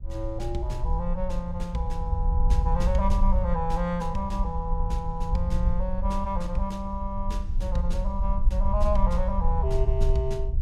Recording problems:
wind noise; below 60 Hz, SNR -2 dB

